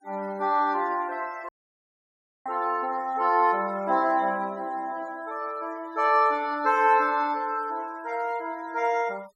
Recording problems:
denoising artefacts; signal-to-artefact ratio 25 dB
dropout; at 1.5 s for 1 s

